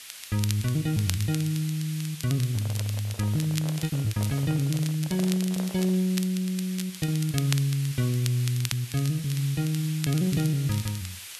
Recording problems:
hiss; SNR 13 dB
crackling; vinyl, SNR 12 dB
lost packets; 4% of the sound replaced, filled with repeated pitch periods
microphone handling noise; from 2.5 to 6 s; peak -8 dB vs average level

